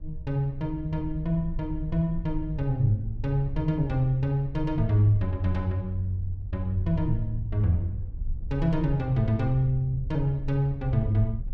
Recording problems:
rumble; below 68 Hz, SNR 13 dB
wind on the microphone; below 66 Hz, SNR 13 dB

